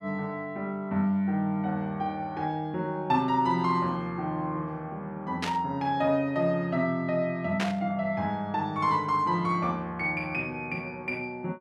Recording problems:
burst of static; at 5.5 s and at 7.5 s; peak +1 dB vs average level

